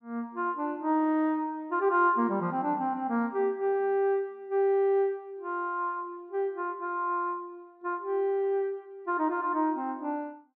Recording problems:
none

